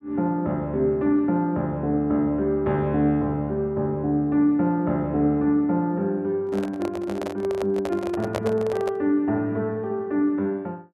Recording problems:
handling noise; from 6.5 to 9 s; peak 0 dB vs average level

